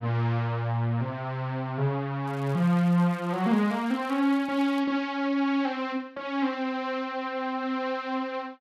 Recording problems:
crackle; from 2.5 to 5 s; loose cable, SNR 27 dB

